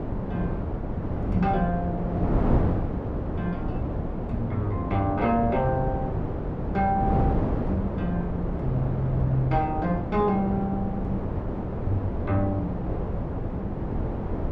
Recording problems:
wind on the microphone; below 380 Hz, SNR 1 dB

